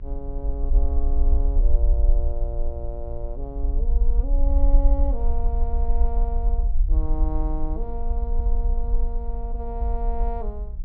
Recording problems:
hum; 60 Hz, harmonics up to 600 Hz, SNR 12 dB
low-frequency rumble; below 50 Hz, SNR -10 dB

